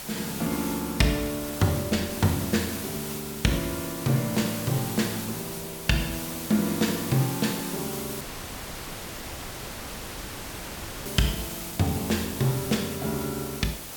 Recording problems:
background hiss; slope -2 dB per octave, SNR 7 dB
wind on the microphone; below 410 Hz, SNR 22 dB
dropout; at 8 s for 3 s

